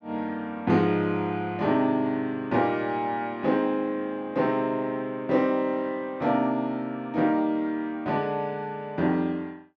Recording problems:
none

